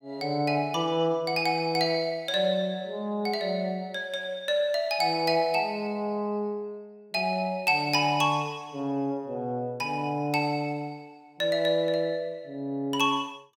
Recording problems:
none

